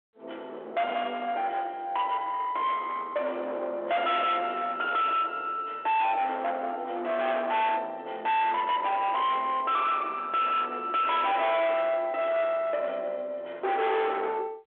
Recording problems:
phone line; 990 Hz to 3.6 kHz, G.726
distorted audio; soft clipping, signal-to-distortion ratio 8 dB

